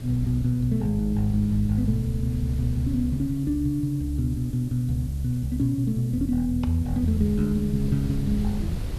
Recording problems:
hum; 50 Hz, harmonics up to 600 Hz, SNR 23 dB
background hiss; slope +1 dB per octave, SNR 26 dB
wind on the microphone; below 100 Hz, SNR 13 dB

